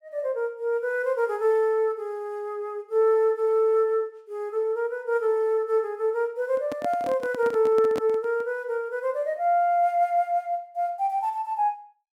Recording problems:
handling noise; from 6.5 to 8.5 s; peak -4 dB vs average level

